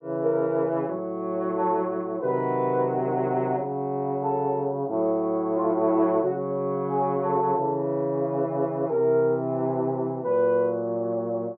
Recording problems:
none

